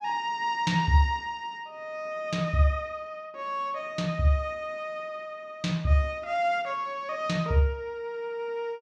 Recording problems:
none

